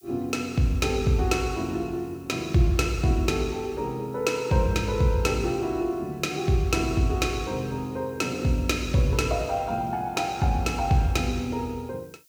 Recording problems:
background hiss; slope +7 dB per octave, SNR 30 dB

